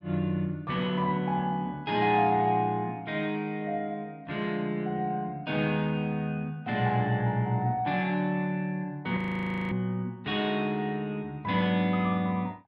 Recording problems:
frozen audio; at 9 s for 0.5 s

